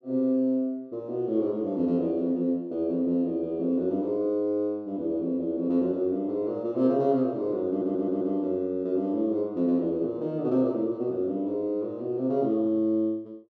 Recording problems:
audio stuttering; at 7.5 s

